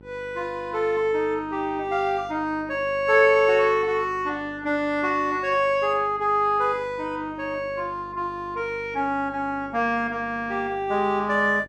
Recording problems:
electrical hum; 50 Hz, harmonics up to 1.4 kHz, SNR 23 dB

